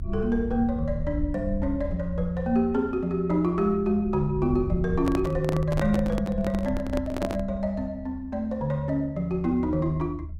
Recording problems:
rumble; below 80 Hz, SNR 10 dB
handling noise; from 5 to 7.5 s; peak 0 dB vs average level

